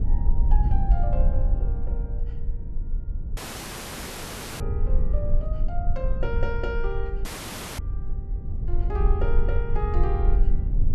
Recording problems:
low-frequency rumble; below 54 Hz, strongest tone 22 Hz, SNR -8 dB
audio cutting out; at 3.5 s for 1 s and at 7.5 s for 0.5 s

